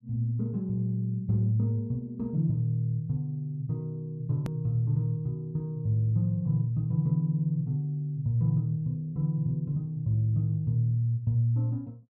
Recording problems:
click at an edit; at 4.5 s

